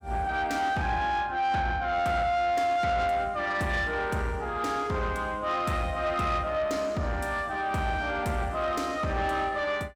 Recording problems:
distorted audio; soft clipping, signal-to-distortion ratio 11 dB

